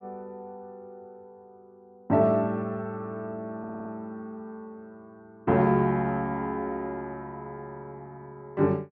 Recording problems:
audio stuttering; at 3.5 s

